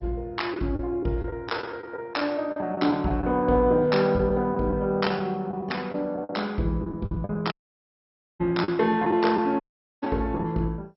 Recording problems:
lossy compression; MP2, log-spectral distance 3 dB, nothing above 5.5 kHz
packet loss; 9% of the sound replaced, filled with the last packet
dropout; at 7.5 s for 1 s and at 9.5 s

